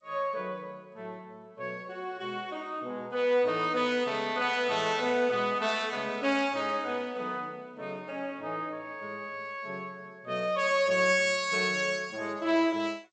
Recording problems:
lossy compression; G.722, log-spectral distance 2 dB, nothing above 7.1 kHz

